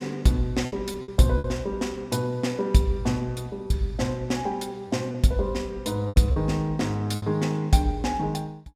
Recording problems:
lost packets; 5% of the sound replaced, filled with repeated pitch periods

